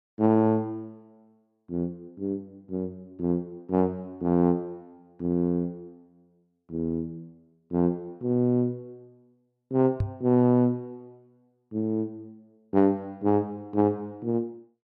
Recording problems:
microphone thump; at 10 s; peak +3 dB vs average level

